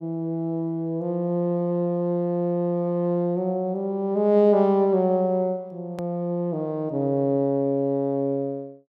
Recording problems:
edit click; at 6 s

